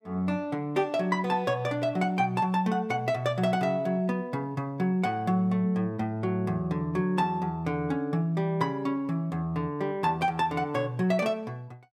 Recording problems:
none

